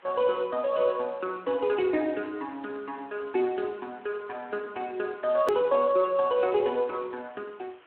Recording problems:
telephone audio; 260 Hz to 3.3 kHz, Speex
hiss; SNR 28 dB
hard cut with a click; at 5.5 s

